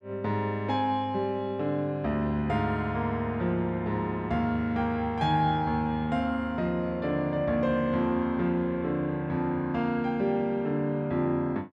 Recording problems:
none

